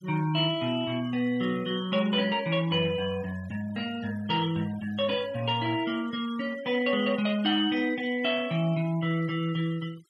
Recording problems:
noise reduction artefacts; signal-to-artefact ratio 20 dB

